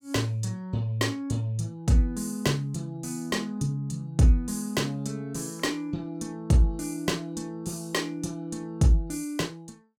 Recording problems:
none

